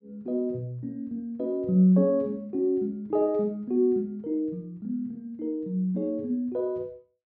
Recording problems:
none

